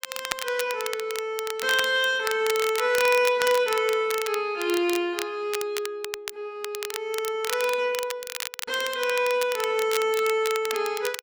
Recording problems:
crackling; vinyl, SNR 9 dB

